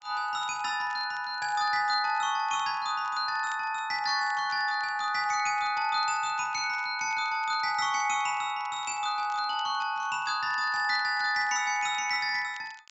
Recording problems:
treble cut off; nothing above 8 kHz
crackle; vinyl, SNR 26 dB

